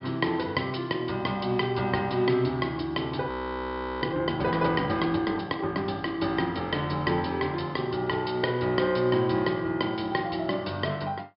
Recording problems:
low-pass filter; nothing above 5.5 kHz
frozen audio; at 3.5 s for 0.5 s

